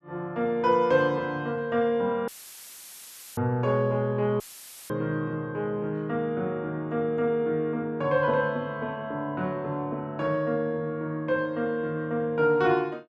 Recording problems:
audio cutting out; at 2.5 s for 1 s and at 4.5 s for 0.5 s; filled with static

